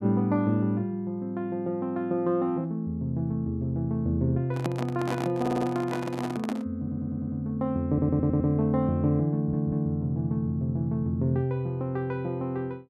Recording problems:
microphone handling noise; from 4.5 to 6.5 s; peak -1 dB vs average level
audio stuttering; 4 times, first at 5.5 s

